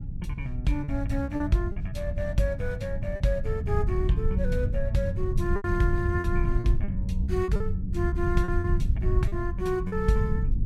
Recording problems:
low-frequency rumble; below 92 Hz, SNR 1 dB
packet loss; 7% of the sound replaced, filled with repeated pitch periods

